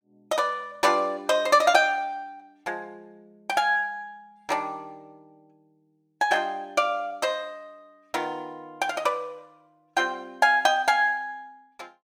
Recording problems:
none

